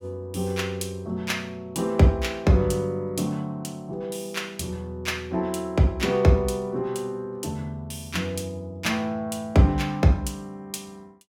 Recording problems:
none

